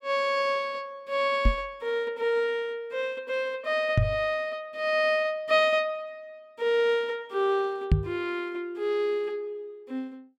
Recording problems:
microphone thump; at 1.5 s, at 4 s and at 8 s; peak +9 dB vs average level

